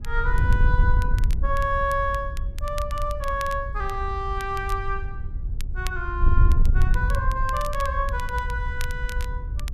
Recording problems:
wind on the microphone; below 68 Hz, SNR -1 dB
crackling; vinyl, SNR 16 dB

